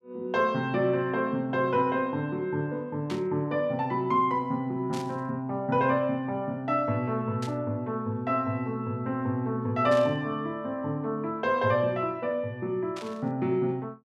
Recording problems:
burst of static; 5 times, first at 3 s; peak -8 dB vs average level

